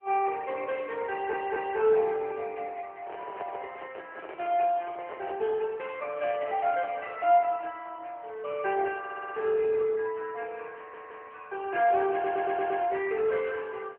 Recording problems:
telephone audio; 170 Hz to 3.2 kHz, AMR-NB
stutter; 4 times, first at 1 s
microphone handling noise; from 3 to 5.5 s; peak -5 dB vs average level

